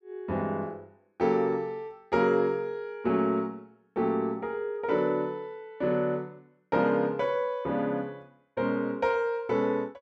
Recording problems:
none

